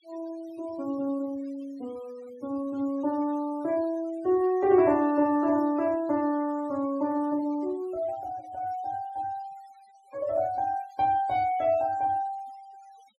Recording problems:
denoising artefacts; signal-to-artefact ratio 24 dB

